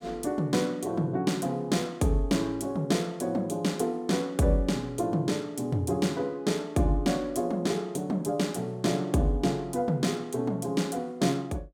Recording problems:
none

